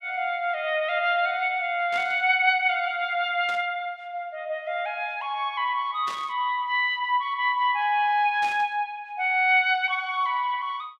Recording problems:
burst of static; 4 times, first at 2 s; peak -10 dB vs average level

